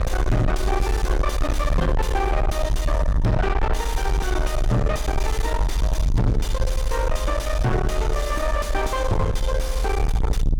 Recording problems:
distorted audio; soft clipping, signal-to-distortion ratio 5 dB
rumble; below 110 Hz, SNR 0 dB

